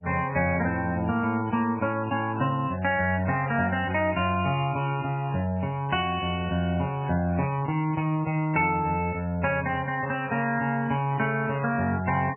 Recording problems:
lossy compression; MP3, log-spectral distance 2 dB, nothing above 2.7 kHz

